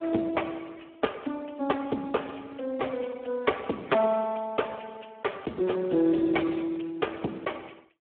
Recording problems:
phone line; 190 Hz to 2.2 kHz, Speex

